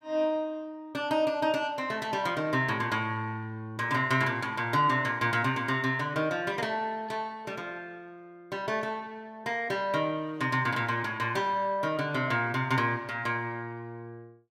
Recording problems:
none

